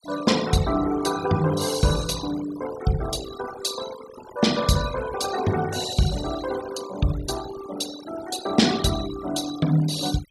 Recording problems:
denoising artefacts; signal-to-artefact ratio 12 dB

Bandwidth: 14.5 kHz